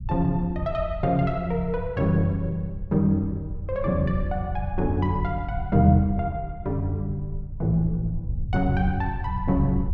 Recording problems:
low-frequency rumble; below 92 Hz, SNR 9 dB

